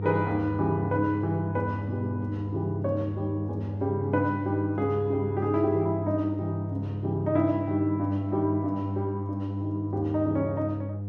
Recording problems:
electrical hum; 50 Hz, harmonics up to 500 Hz, SNR 4 dB

